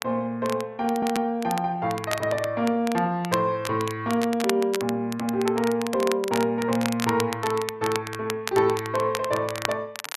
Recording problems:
crackle; vinyl, SNR 10 dB
stutter; at 1 s

